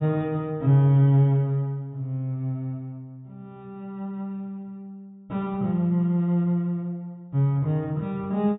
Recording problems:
treble missing; nothing above 4 kHz

